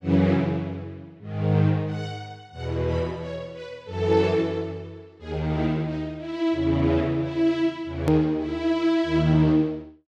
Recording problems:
click at an edit; at 8 s

